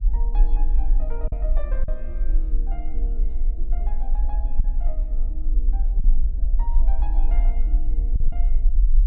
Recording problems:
low-frequency rumble; below 40 Hz, strongest tone 20 Hz, SNR -17 dB
wind on the microphone; below 140 Hz, SNR 10 dB
lost packets; 3% of the sound replaced, filled with silence

